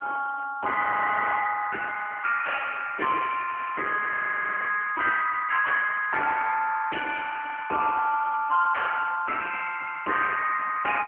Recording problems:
telephone audio; 430 Hz to 3 kHz, AMR-NB
distorted audio; soft clipping, signal-to-distortion ratio 13 dB
audio freezing; at 1 s for 0.5 s and at 4 s for 0.5 s

